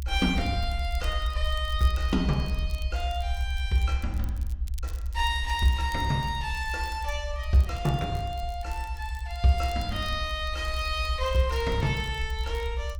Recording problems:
rumble; below 68 Hz, SNR 4 dB
crackle; vinyl, SNR 23 dB

